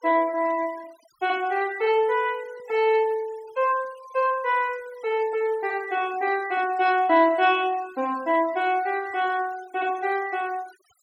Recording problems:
noise reduction artefacts; signal-to-artefact ratio 22 dB

